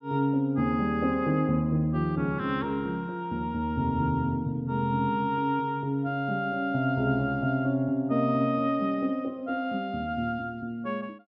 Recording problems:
none

